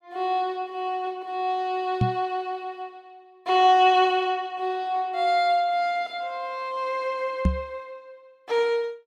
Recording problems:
microphone thump; at 2 s and at 7.5 s; peak +6 dB vs average level

